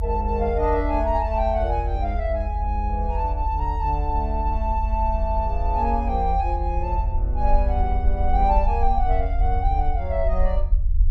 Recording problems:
rumble; below 72 Hz, SNR 0 dB

